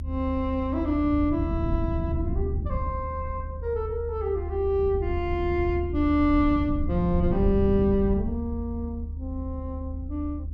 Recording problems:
rumble; below 88 Hz, SNR 4 dB

